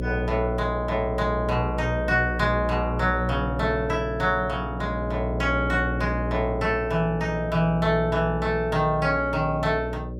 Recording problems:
hum; 60 Hz, harmonics up to 600 Hz, SNR 6 dB

